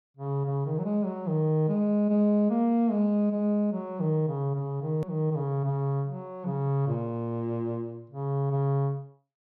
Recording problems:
click at an edit; at 5 s

